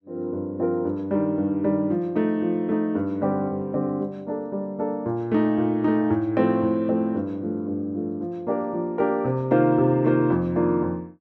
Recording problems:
none

